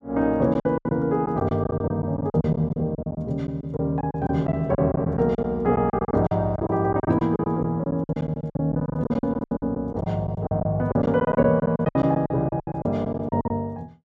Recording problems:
lost packets; 17% of the sound replaced, filled with silence

